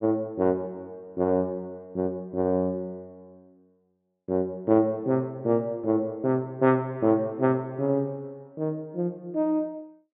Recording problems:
low-pass filter; nothing above 4 kHz

